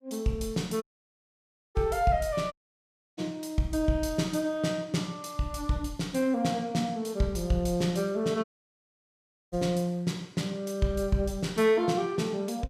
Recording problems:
dropout; at 1 s for 1 s, at 2.5 s for 0.5 s and at 8.5 s for 1 s

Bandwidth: 15.5 kHz